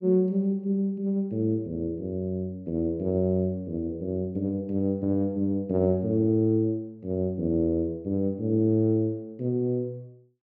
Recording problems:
none

